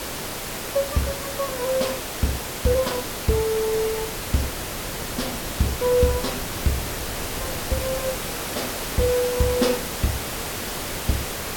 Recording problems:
background hiss; slope -3 dB per octave, SNR 3 dB
wind on the microphone; below 200 Hz, SNR 15 dB

